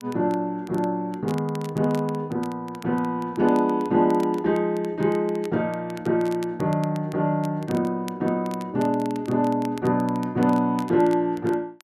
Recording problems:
crackle; vinyl, SNR 23 dB

